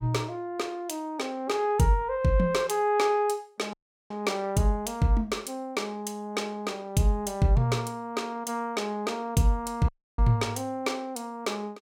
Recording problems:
audio cutting out; at 3.5 s and at 10 s

